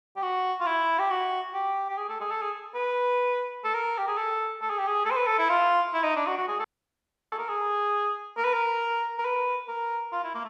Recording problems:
audio cutting out; at 6.5 s for 0.5 s

